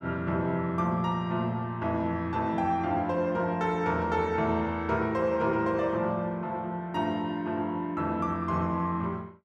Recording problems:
none

